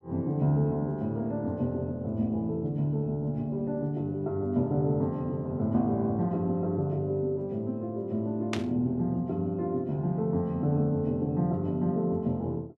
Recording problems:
burst of static; at 8.5 s; peak 0 dB vs average level

